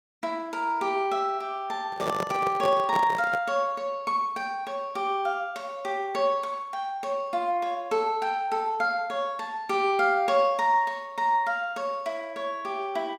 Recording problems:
microphone handling noise; from 2 to 3.5 s; peak +1 dB vs average level

